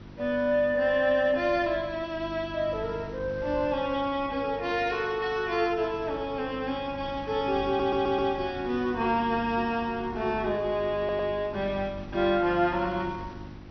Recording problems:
treble missing; nothing above 6 kHz
hum; 50 Hz, harmonics up to 350 Hz, SNR 16 dB
wind on the microphone; below 720 Hz, SNR 20 dB
audio stuttering; at 7.5 s and at 11 s

